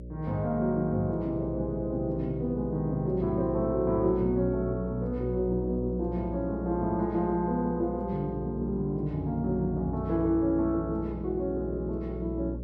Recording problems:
electrical hum; 60 Hz, harmonics up to 600 Hz, SNR 10 dB

